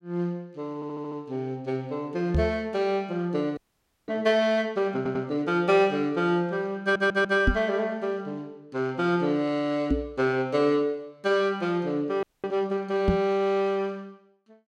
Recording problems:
audio stuttering; at 1 s, at 5 s and at 7 s
microphone thump; 4 times, first at 2.5 s; peak +6 dB vs average level
frozen audio; at 3.5 s for 0.5 s and at 12 s

